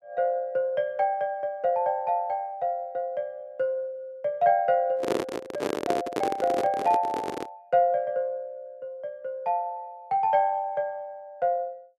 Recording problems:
handling noise; from 5 to 7.5 s; peak +4 dB vs average level

